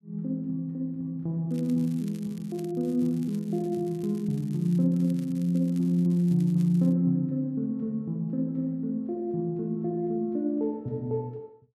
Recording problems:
crackle; from 1.5 to 6 s and at 6 s; loose cable, SNR 27 dB

